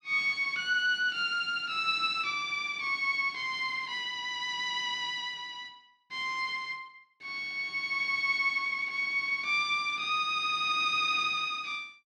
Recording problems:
none

